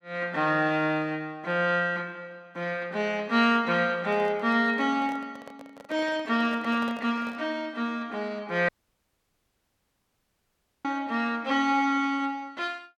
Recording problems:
microphone handling noise; from 4 to 7.5 s; peak -9 dB vs average level
dropout; at 8.5 s for 2 s

